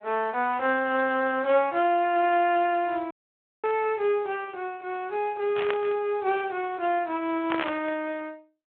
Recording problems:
phone line; 300 Hz to 3.6 kHz, Speex
dropout; at 3 s for 0.5 s
static burst; at 3.5 s, at 5.5 s and at 7.5 s; peak +1 dB vs average level

